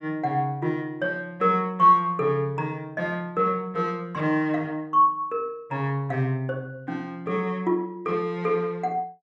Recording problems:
none

